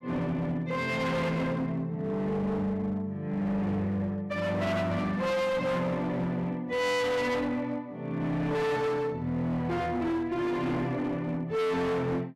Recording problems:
distorted audio; hard clipping, signal-to-distortion ratio 7 dB

